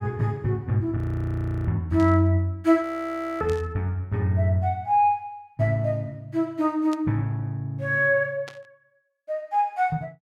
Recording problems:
frozen audio; at 1 s for 0.5 s and at 3 s for 0.5 s
burst of static; 4 times, first at 2 s; peak -12 dB vs average level

